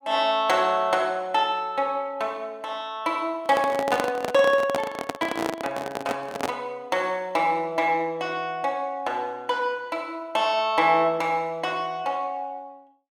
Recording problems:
handling noise; from 3.5 to 6.5 s; peak +2 dB vs average level

